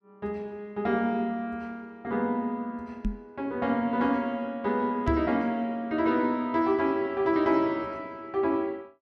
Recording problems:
microphone thump; at 3 s and at 5 s; peak +2 dB vs average level

